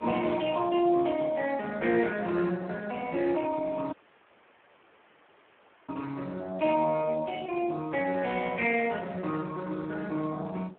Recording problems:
telephone audio; 260 Hz to 3.1 kHz, Speex
wind on the microphone; below 900 Hz, SNR 24 dB
dropout; at 4 s for 2 s

